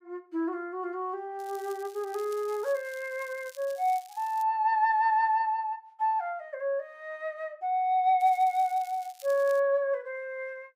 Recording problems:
crackle; from 1.5 to 4.5 s and from 8 to 9.5 s; loose cable, SNR 23 dB

